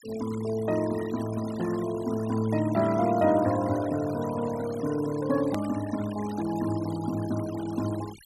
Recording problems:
denoising artefacts; signal-to-artefact ratio 16 dB
hard cut with a click; at 5.5 s

